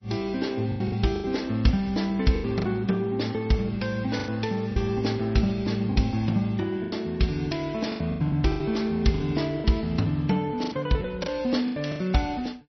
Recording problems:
lossy codec; MP3, log-spectral distance 3 dB, nothing above 5.8 kHz
lost packets; 10% of the sound replaced, filled with the last packet

